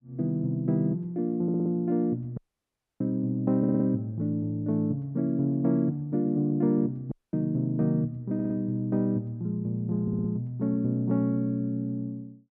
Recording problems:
audio stuttering; 4 times, first at 1.5 s
dropout; at 2.5 s for 0.5 s and at 7 s

